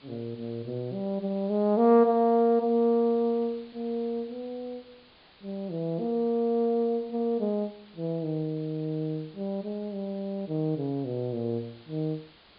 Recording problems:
low-pass filter; nothing above 4.8 kHz
hiss; SNR 27 dB

